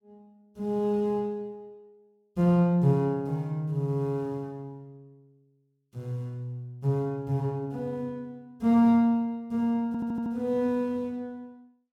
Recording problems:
stutter; at 10 s

